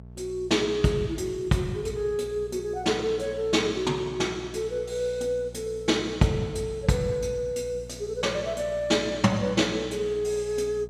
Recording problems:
hum; 60 Hz, harmonics up to 660 Hz, SNR 18 dB

